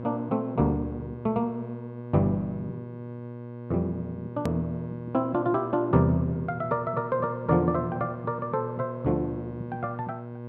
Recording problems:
hum; 60 Hz, harmonics up to 1.1 kHz, SNR 10 dB
edit click; at 4.5 s

